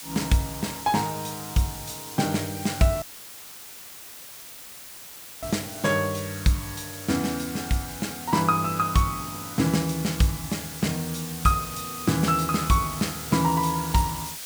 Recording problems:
hiss; slope +2 dB per octave, SNR 10 dB
dropout; at 3 s for 2.5 s; filled with static

